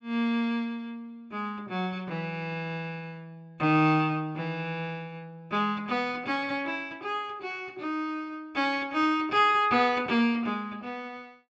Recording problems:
low-pass filter; nothing above 8 kHz

